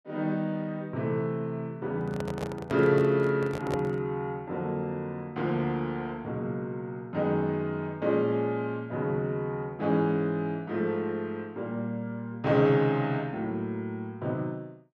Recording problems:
microphone handling noise; from 2 to 4 s; peak 0 dB vs average level

